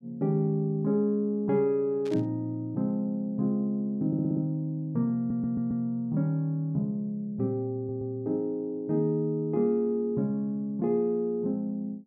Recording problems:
burst of static; at 2 s; peak -13 dB vs average level
stutter; at 4 s, at 5 s and at 8 s

